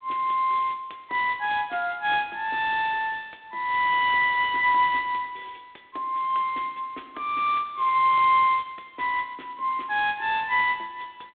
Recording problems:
phone line; 260 Hz to 3.9 kHz, G.726

